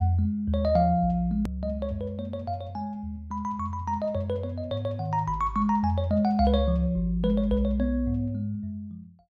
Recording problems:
edit click; at 1.5 s

